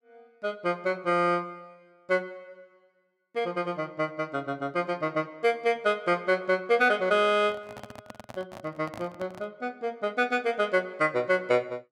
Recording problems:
microphone handling noise; from 7.5 to 9.5 s; peak -10 dB vs average level

